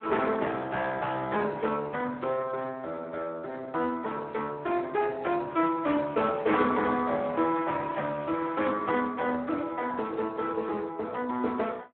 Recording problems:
telephone audio; 220 Hz to 3.5 kHz, Speex

